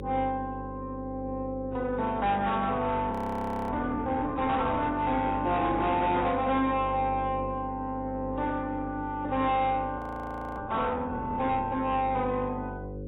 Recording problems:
codec artefacts; AAC, log-spectral distance 2 dB, nothing above 17.1 kHz
distortion; soft clipping, signal-to-distortion ratio 11 dB
hum; 50 Hz, harmonics up to 550 Hz, SNR 10 dB
frozen audio; at 3 s for 0.5 s and at 10 s for 0.5 s

